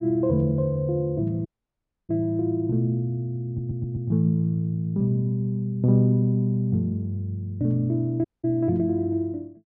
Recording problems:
dropout; at 1.5 s for 0.5 s and at 8.5 s
stutter; at 3.5 s

